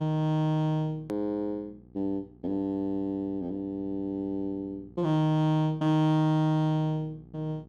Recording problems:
electrical hum; 60 Hz, harmonics up to 840 Hz, SNR 25 dB
edit click; at 1 s

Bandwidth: 13.5 kHz